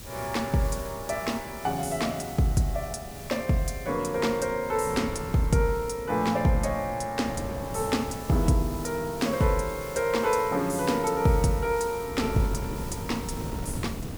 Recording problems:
background hiss; slope +1 dB per octave, SNR 17 dB
wind noise; below 300 Hz, SNR 13 dB

